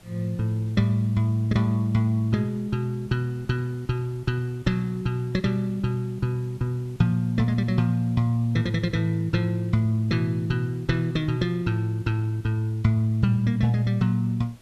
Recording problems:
background hiss; slope -3 dB per octave, SNR 28 dB

